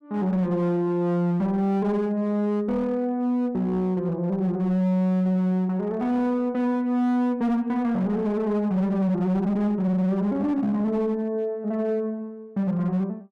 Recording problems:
distortion; hard clipping, signal-to-distortion ratio 10 dB

